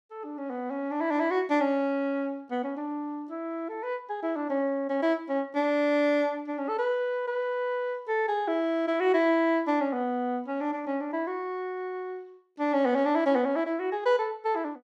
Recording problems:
none

